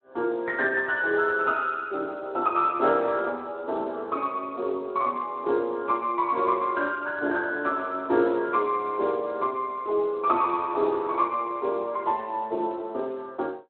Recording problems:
telephone audio; 320 Hz to 3.7 kHz, Speex

